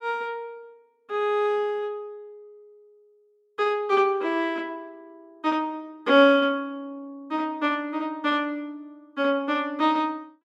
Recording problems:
none

